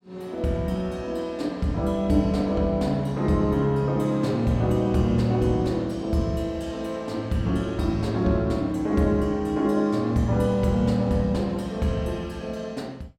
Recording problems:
none

